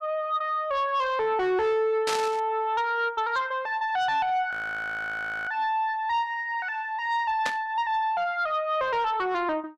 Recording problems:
distorted audio; soft clipping, signal-to-distortion ratio 12 dB
burst of static; at 2 s and at 7.5 s; peak +1 dB vs average level
frozen audio; at 4.5 s for 1 s

